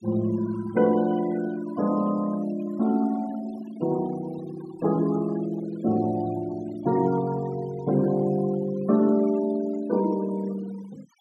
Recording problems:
denoising artefacts; signal-to-artefact ratio 19 dB

